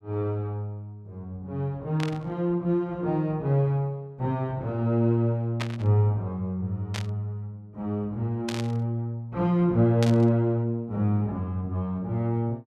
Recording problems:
static burst; 5 times, first at 2 s; peak -2 dB vs average level

